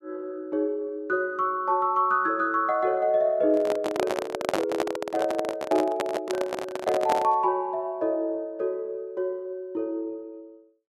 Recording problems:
handling noise; from 3.5 to 7.5 s; peak +4 dB vs average level

